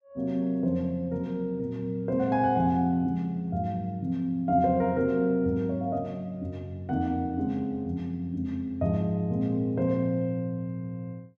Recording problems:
none

